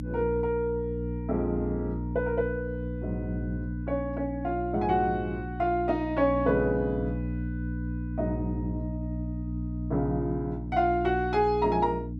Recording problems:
electrical hum; 60 Hz, harmonics up to 300 Hz, SNR 5 dB

